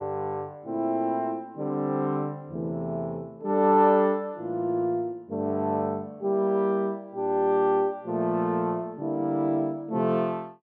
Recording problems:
treble cut off; nothing above 8 kHz

